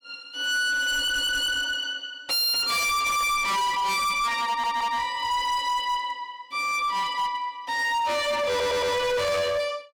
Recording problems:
distorted audio; hard clipping, signal-to-distortion ratio 6 dB
stutter; at 1 s, at 4.5 s and at 8.5 s

